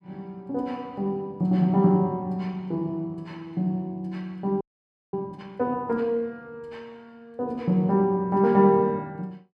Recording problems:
audio freezing; at 4.5 s for 0.5 s

